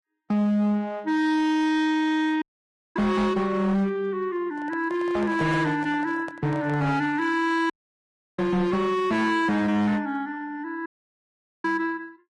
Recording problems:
codec artefacts; Vorbis, log-spectral distance 2 dB, nothing above 10.4 kHz
distortion; hard clipping, signal-to-distortion ratio 11 dB
audio cutting out; at 2.5 s for 0.5 s, at 7.5 s for 0.5 s and at 11 s for 1 s
handling noise; from 4.5 to 7 s; peak -9 dB vs average level

